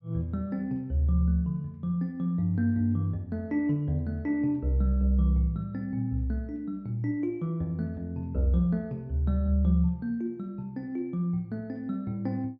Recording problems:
none

